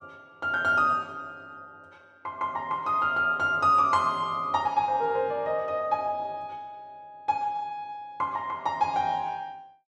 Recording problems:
none

